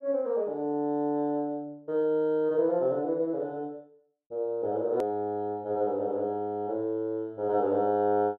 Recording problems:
hard cut with a click; at 5 s

